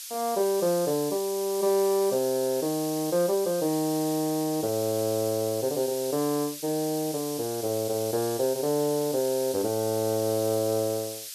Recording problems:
hiss; SNR 9 dB

